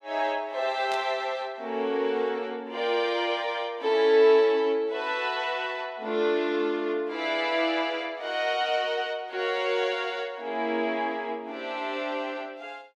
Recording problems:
burst of static; at 1 s; peak -9 dB vs average level

